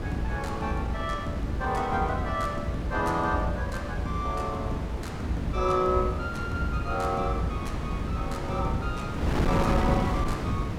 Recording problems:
wind noise; below 370 Hz, SNR 3 dB

